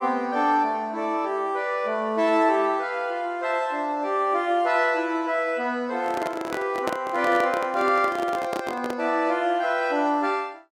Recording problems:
handling noise; from 6 to 9 s; peak +1 dB vs average level

